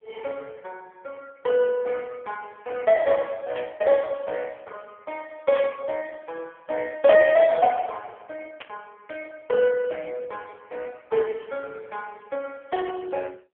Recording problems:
phone line; 320 Hz to 3.1 kHz, AMR-NB
static burst; at 3.5 s, at 5.5 s and at 8.5 s; peak -6 dB vs average level

